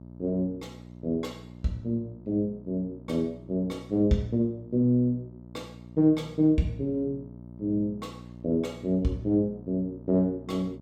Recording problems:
hum; 60 Hz, harmonics up to 960 Hz, SNR 17 dB

